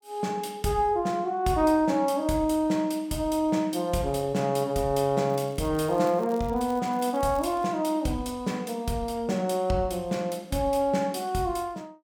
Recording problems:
crackle; from 5.5 to 7.5 s; loose cable, SNR 25 dB

